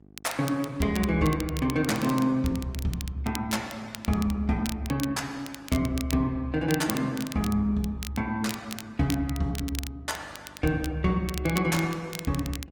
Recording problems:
lossy codec; Opus, log-spectral distance 2 dB, nothing above 18.3 kHz
hum; 50 Hz, harmonics up to 850 Hz, SNR 26 dB
crackling; vinyl, SNR 12 dB

